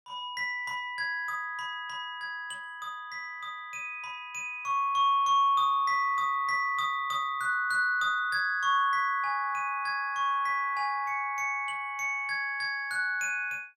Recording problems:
none

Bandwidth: 17 kHz